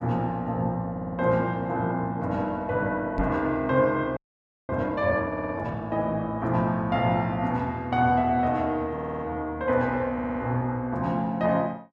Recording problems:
audio stuttering; 4 times, first at 1 s
microphone thump; at 3 s; peak +2 dB vs average level
frozen audio; at 4 s for 0.5 s

